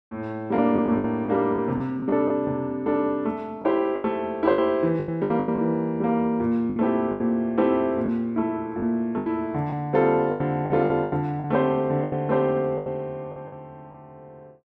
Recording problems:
packet loss; 10% of the sound replaced, filled with the last packet

